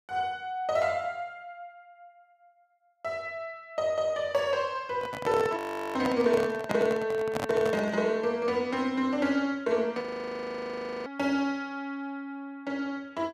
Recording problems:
handling noise; from 5 to 8 s; peak +1 dB vs average level
audio freezing; at 5.5 s and at 10 s for 1 s

